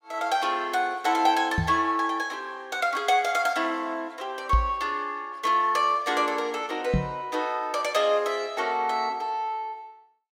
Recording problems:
microphone thump; at 1.5 s, at 4.5 s and at 7 s; peak +5 dB vs average level

